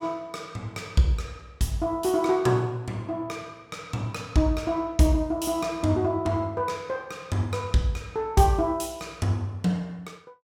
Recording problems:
none

